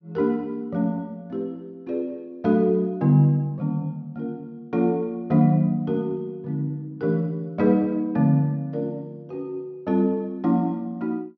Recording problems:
low-pass filter; nothing above 6.3 kHz

